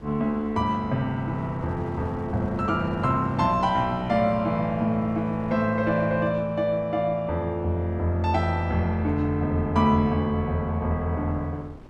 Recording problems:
wind noise; below 480 Hz, SNR 21 dB

